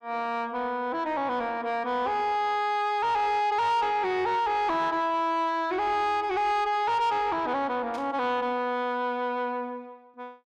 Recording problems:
distortion; soft clipping, signal-to-distortion ratio 10 dB
static burst; at 8 s; peak -13 dB vs average level

